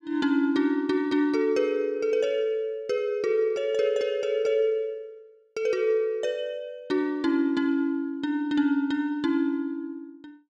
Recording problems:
none

